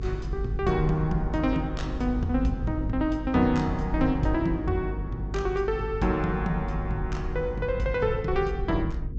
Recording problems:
treble cut off; nothing above 8 kHz
hum; 50 Hz, harmonics up to 450 Hz, SNR 7 dB
low-frequency rumble; below 88 Hz, SNR 9 dB

